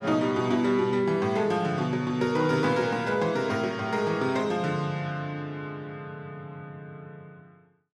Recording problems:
none

